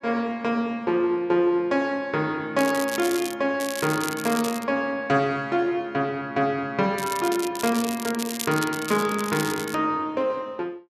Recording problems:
crackling; at 2.5 s, from 3.5 to 4.5 s and from 7 to 10 s; loose cable, SNR 9 dB

